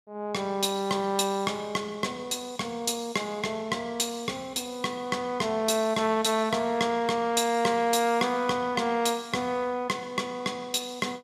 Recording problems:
none

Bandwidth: 15 kHz